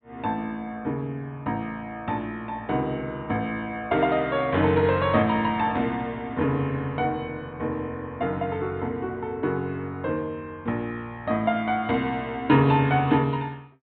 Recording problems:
low-pass filter; nothing above 4 kHz

